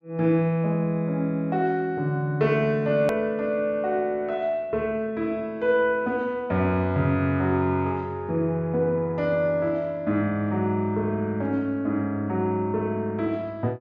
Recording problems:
treble missing; nothing above 8 kHz
hard cut with a click; at 3 s

